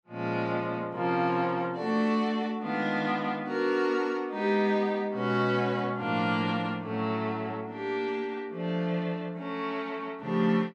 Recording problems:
none

